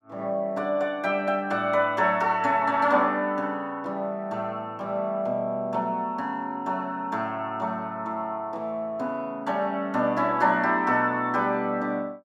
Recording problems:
none

